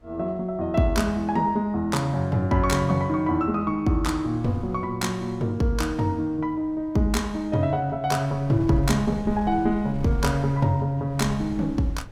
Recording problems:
wind on the microphone; below 100 Hz, SNR 17 dB

